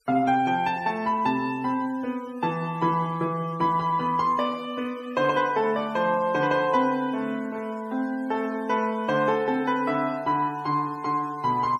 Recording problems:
denoising artefacts; signal-to-artefact ratio 24 dB

